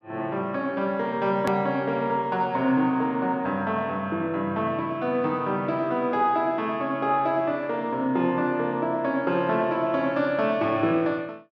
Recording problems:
hard cut with a click; at 1.5 s

